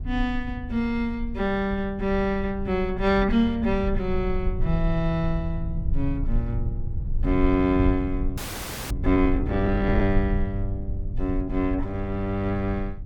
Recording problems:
low-frequency rumble; below 72 Hz, SNR 6 dB
audio freezing; at 8.5 s for 0.5 s

